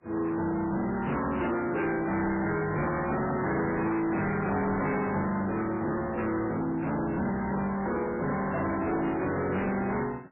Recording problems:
codec artefacts; MP3, log-spectral distance 5 dB
distorted audio; soft clipping, signal-to-distortion ratio 6 dB
burst of static; 4 times, first at 2.5 s; peak -10 dB vs average level

